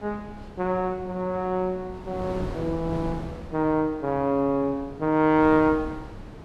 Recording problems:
wind on the microphone; below 430 Hz, SNR 14 dB

